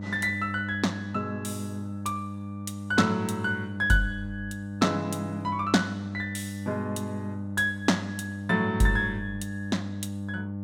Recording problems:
mains hum; 50 Hz, harmonics up to 600 Hz, SNR 7 dB

